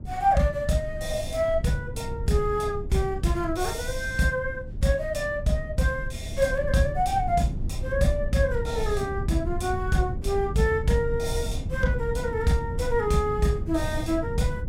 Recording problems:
low-frequency rumble; below 110 Hz, SNR 7 dB

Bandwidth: 16.5 kHz